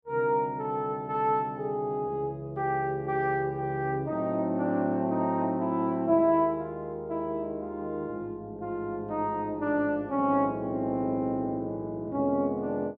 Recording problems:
none

